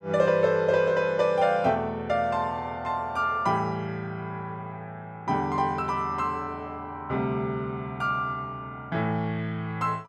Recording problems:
none

